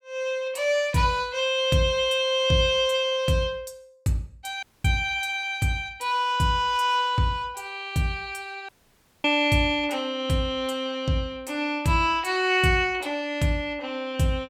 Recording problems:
audio cutting out; at 4.5 s and at 8.5 s for 0.5 s

